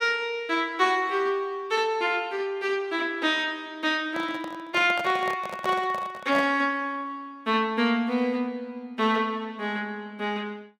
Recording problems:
microphone handling noise; from 4 to 6.5 s; peak -2 dB vs average level

